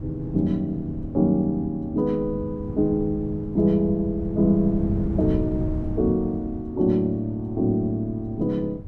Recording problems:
wind on the microphone; below 150 Hz, SNR 10 dB

